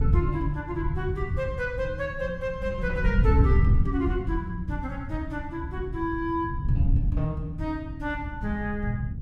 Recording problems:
wind noise; below 110 Hz, SNR -1 dB

